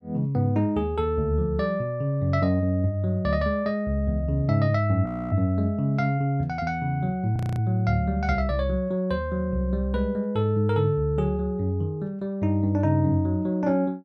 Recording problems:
audio freezing; at 5 s and at 7.5 s

